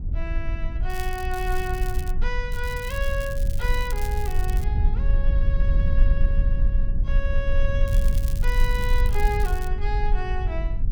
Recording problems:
rumble; below 54 Hz, SNR -6 dB
crackling; from 1 to 2 s, from 2.5 to 4.5 s and from 8 to 9.5 s; loose cable, SNR 10 dB

